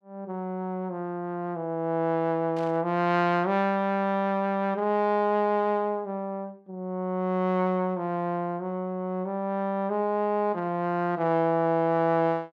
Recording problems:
burst of static; at 2.5 s; peak -15 dB vs average level

